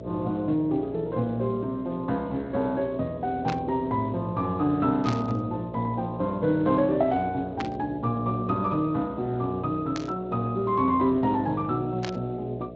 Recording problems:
lossy compression; Speex, log-spectral distance 2 dB
hum; 60 Hz, harmonics up to 660 Hz, SNR 13 dB
static burst; 5 times, first at 3.5 s; peak -2 dB vs average level

